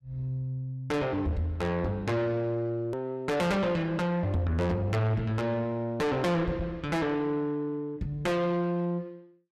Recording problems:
distortion; soft clipping, signal-to-distortion ratio 6 dB
edit click; at 3 s

